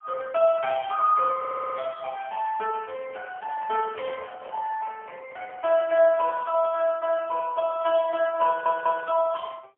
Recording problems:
phone line; 260 Hz to 3.1 kHz, AMR-NB, then MP3
stutter; at 1.5 s and at 8.5 s
handling noise; from 3.5 to 7 s; peak -14 dB vs average level

